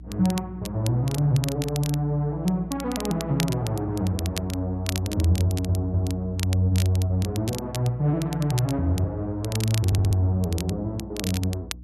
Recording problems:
hum; 60 Hz, harmonics up to 300 Hz, SNR 16 dB
crackling; vinyl, SNR 12 dB
stutter; at 5.5 s and at 10 s

